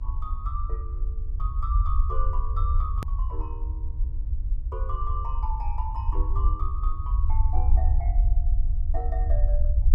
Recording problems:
hum; 50 Hz, harmonics up to 1.2 kHz, SNR 19 dB
rumble; below 60 Hz, SNR -10 dB
hard cut with a click; at 3 s

